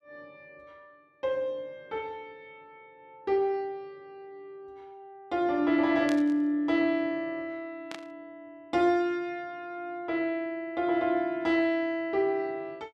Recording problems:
burst of static; at 6 s and at 8 s; peak -7 dB vs average level

